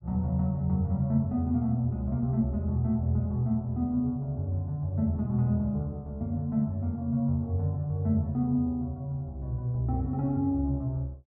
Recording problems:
none

